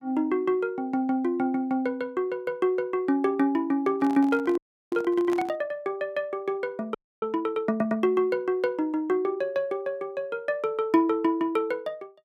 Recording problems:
handling noise; from 4 to 5.5 s; peak -6 dB vs average level
audio freezing; at 4.5 s and at 7 s

